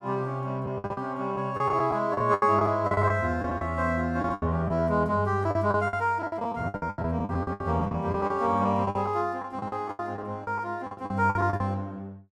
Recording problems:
packet loss; 17% of the sound replaced, filled with the last packet

